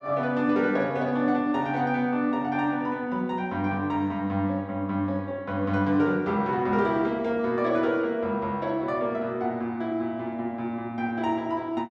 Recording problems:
none

